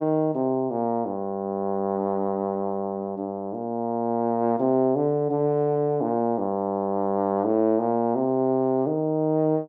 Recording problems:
none

